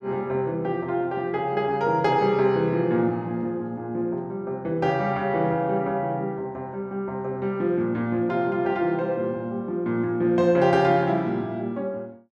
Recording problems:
none

